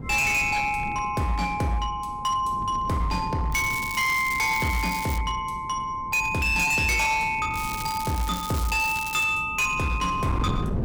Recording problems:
distorted audio; hard clipping, signal-to-distortion ratio 11 dB
wind noise; below 260 Hz, SNR 13 dB
crackle; from 3.5 to 5 s and from 7.5 to 9 s; loose cable, SNR 12 dB

